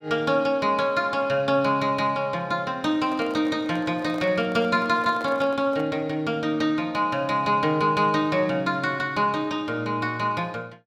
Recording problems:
microphone handling noise; from 3 to 6 s; peak -10 dB vs average level

